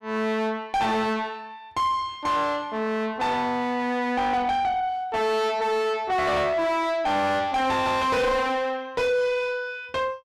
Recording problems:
distorted audio; soft clipping, signal-to-distortion ratio 5 dB

